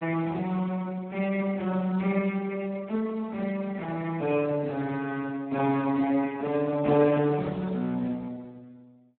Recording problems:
telephone audio; 150 Hz to 3.5 kHz, Speex

